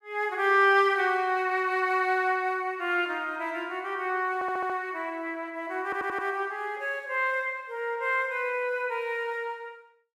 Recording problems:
stutter; at 4.5 s and at 6 s

